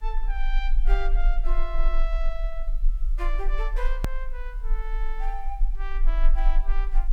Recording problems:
hiss; slope -2 dB per octave, SNR 27 dB
low-frequency rumble; below 32 Hz, strongest tone 20 Hz, SNR -9 dB
edit click; at 4 s

